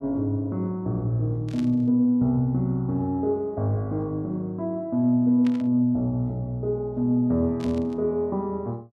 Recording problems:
burst of static; at 1.5 s, at 5.5 s and at 7.5 s; peak -12 dB vs average level

